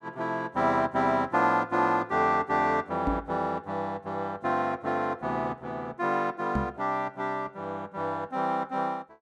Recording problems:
knock on the microphone; at 3 s and at 6.5 s; peak +2 dB vs average level

